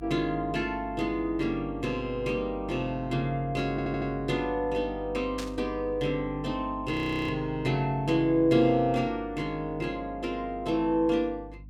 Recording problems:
electrical hum; 50 Hz, harmonics up to 300 Hz, SNR 16 dB
audio stuttering; at 3.5 s
burst of static; at 5.5 s; peak -5 dB vs average level
audio freezing; at 7 s

